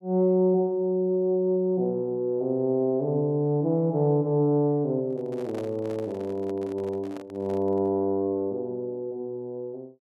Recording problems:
handling noise; from 5 to 8 s; peak -10 dB vs average level

